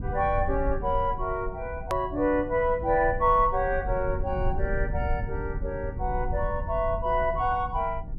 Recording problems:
rumble; below 82 Hz, SNR 8 dB
edit click; at 2 s

